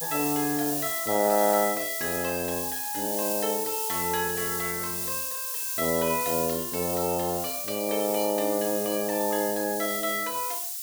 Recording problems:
background hiss; slope +8 dB per octave, SNR 1 dB

